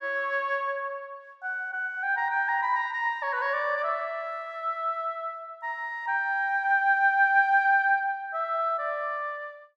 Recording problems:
none

